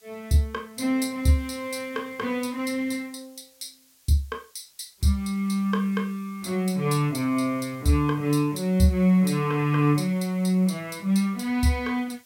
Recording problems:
hiss; slope +2 dB per octave, SNR 29 dB

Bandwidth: 16.5 kHz